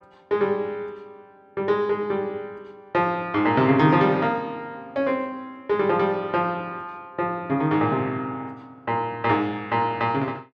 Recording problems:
none

